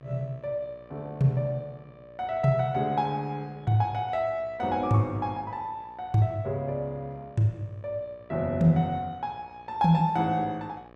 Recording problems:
electrical hum; 60 Hz, harmonics up to 2.5 kHz, SNR 26 dB

